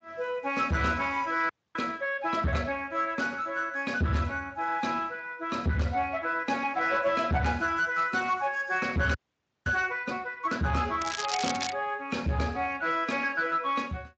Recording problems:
codec artefacts; MP3, then Speex, log-spectral distance 4 dB
distortion; soft clipping, signal-to-distortion ratio 10 dB
frozen audio; at 1.5 s and at 9 s for 0.5 s
crackling; at 11 s; loose cable, SNR 6 dB

